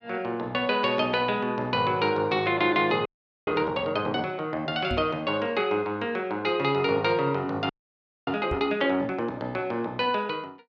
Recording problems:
frozen audio; at 3 s and at 7.5 s for 0.5 s
knock on the microphone; at 5 s and at 8.5 s; peak -2 dB vs average level

